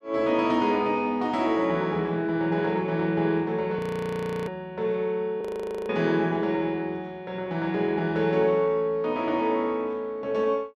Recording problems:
frozen audio; at 4 s for 0.5 s and at 5.5 s

